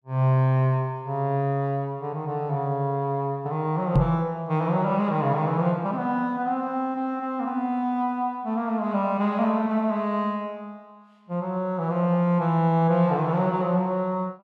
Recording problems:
microphone thump; at 4 s; peak +7 dB vs average level

